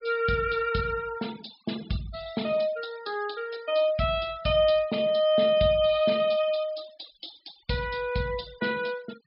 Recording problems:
low-pass filter; nothing above 5.5 kHz
denoising artefacts; signal-to-artefact ratio 20 dB

